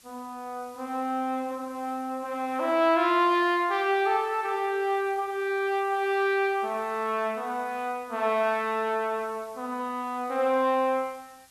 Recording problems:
hiss; slope +1 dB per octave, SNR 27 dB

